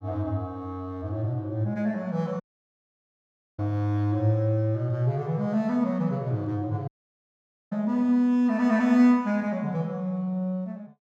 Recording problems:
dropout; at 2.5 s for 1 s and at 7 s for 1 s

